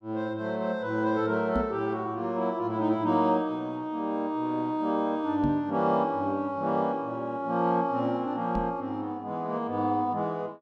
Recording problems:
microphone thump; at 1.5 s, at 5.5 s and at 8.5 s; peak +1 dB vs average level

